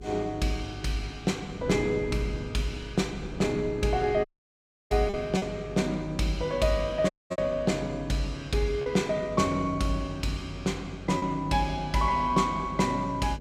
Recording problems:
hum; 50 Hz, harmonics up to 450 Hz, SNR 15 dB
wind noise; below 330 Hz, SNR 17 dB
lost packets; 1.9% of the sound replaced, filled with repeated pitch periods
dropout; at 4.5 s for 0.5 s and at 7 s

